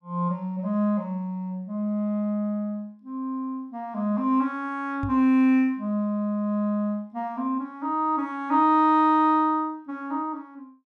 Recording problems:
microphone thump; at 5 s; peak -3 dB vs average level

